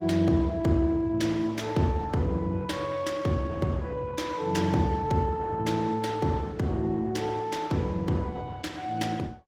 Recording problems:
codec artefacts; Opus, log-spectral distance 3 dB, nothing above 19 kHz

